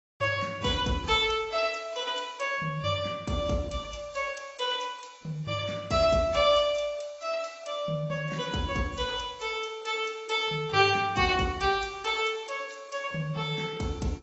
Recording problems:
codec artefacts; AAC, log-spectral distance 4 dB, nothing above 7.6 kHz

